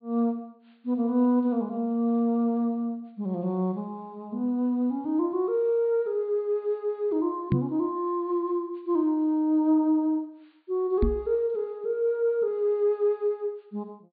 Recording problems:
treble cut off; nothing above 4.6 kHz
knock on the microphone; at 7.5 s and at 11 s; peak +6 dB vs average level

